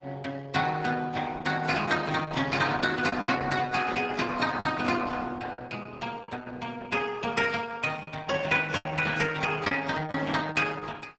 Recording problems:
codec artefacts; AAC, then Opus, log-spectral distance 5 dB, nothing above 7.8 kHz
lost packets; 4% of the sound replaced, filled with the last packet

